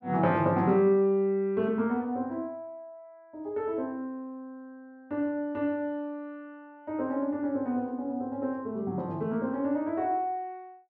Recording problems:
none

